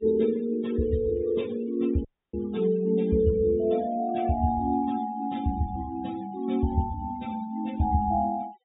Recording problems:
low-pass filter; nothing above 4 kHz
noise reduction artefacts; signal-to-artefact ratio 21 dB
audio cutting out; at 2 s

